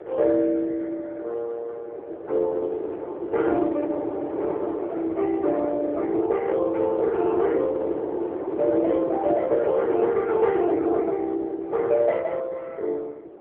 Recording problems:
telephone audio; 300 Hz to 2.8 kHz, AMR-NB
wind noise; below 500 Hz, SNR 7 dB

